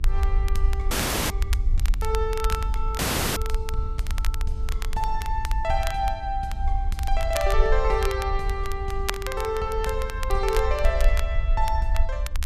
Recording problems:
hum; 50 Hz, harmonics up to 800 Hz, SNR 19 dB
rumble; below 56 Hz, SNR 0 dB
crackling; vinyl, SNR 10 dB
dropout; at 1 s and at 3 s

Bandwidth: 14.5 kHz